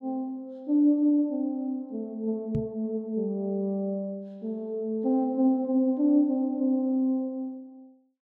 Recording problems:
microphone bump; at 2.5 s; peak +1 dB vs average level

